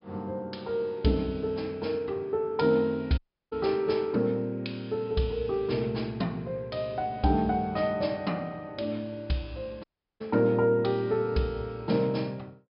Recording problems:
treble cut off; nothing above 5.2 kHz
dropout; at 3 s and at 10 s

